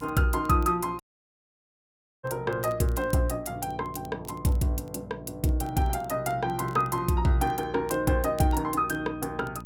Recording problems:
hum; 60 Hz, harmonics up to 660 Hz, SNR 17 dB
crackling; vinyl, SNR 29 dB
dropout; at 1 s for 1 s

